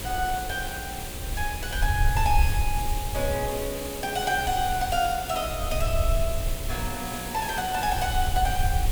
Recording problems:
hum; 60 Hz, harmonics up to 540 Hz, SNR 15 dB
hiss; slope -2 dB per octave, SNR 7 dB
rumble; below 78 Hz, SNR 3 dB

